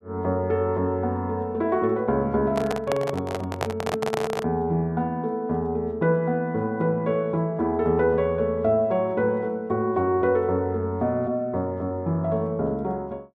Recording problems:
handling noise; from 2.5 to 4.5 s; peak +2 dB vs average level

